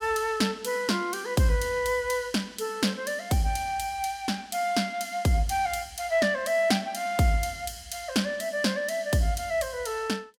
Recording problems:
none

